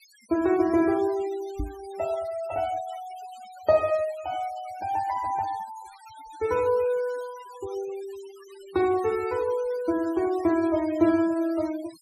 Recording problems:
denoising artefacts; signal-to-artefact ratio 19 dB
microphone bump; at 1.5 s; peak -2 dB vs average level

